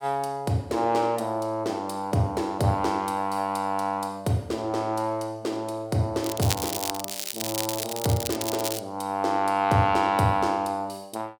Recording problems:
crackle; from 6 to 9 s; loose cable, SNR 4 dB

